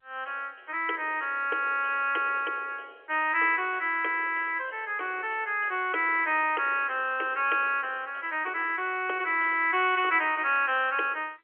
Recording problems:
telephone audio; 280 Hz to 3.3 kHz, G.711

